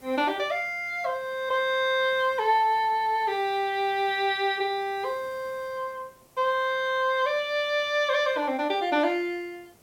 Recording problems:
hiss; SNR 30 dB

